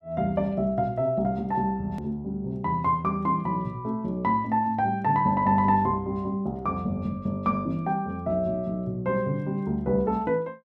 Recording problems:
hard cut with a click; at 2 s

